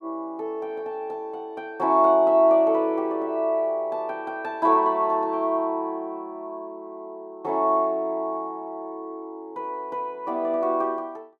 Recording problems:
none

